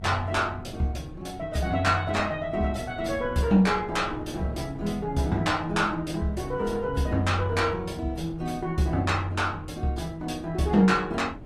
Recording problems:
lossy codec; AAC, log-spectral distance 2 dB, nothing above 15.5 kHz
wind on the microphone; below 230 Hz, SNR 16 dB

